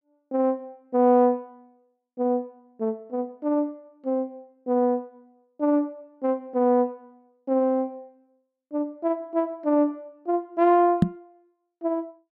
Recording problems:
knock on the microphone; at 11 s; peak +9 dB vs average level

